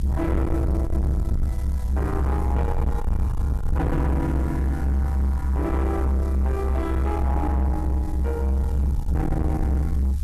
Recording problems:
distorted audio; soft clipping, signal-to-distortion ratio 8 dB
background hiss; slope 0 dB per octave, SNR 22 dB
rumble; below 80 Hz, strongest tone 68 Hz, SNR -4 dB

